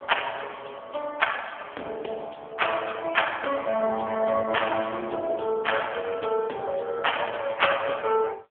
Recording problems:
telephone audio; 300 Hz to 3.2 kHz, AMR-NB

